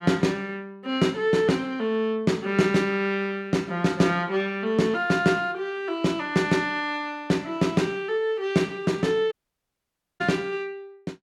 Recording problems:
audio cutting out; at 9.5 s for 1 s

